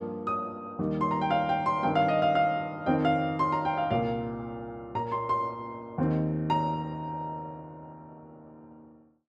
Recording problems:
none

